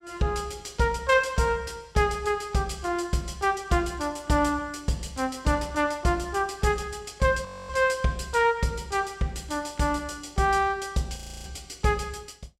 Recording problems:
frozen audio; at 7.5 s and at 11 s

